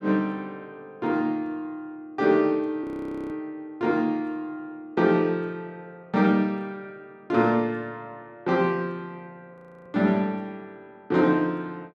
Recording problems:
frozen audio; at 3 s and at 9.5 s

